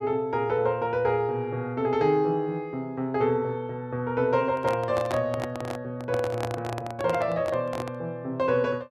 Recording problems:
handling noise; from 4.5 to 8 s; peak 0 dB vs average level

